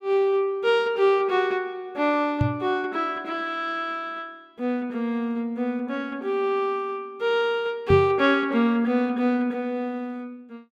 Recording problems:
microphone thump; at 2.5 s and at 8 s; peak +5 dB vs average level

